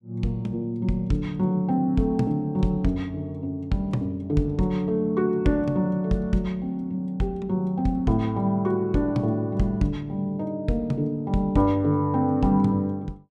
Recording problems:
none

